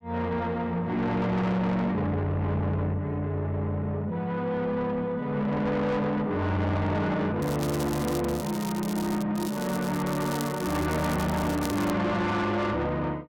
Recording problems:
distortion; soft clipping, signal-to-distortion ratio 8 dB
crackling; from 7.5 to 9 s and from 9.5 to 12 s; loose cable, SNR 13 dB

